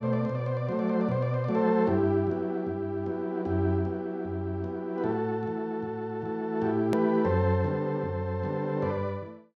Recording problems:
hard cut with a click; at 7 s

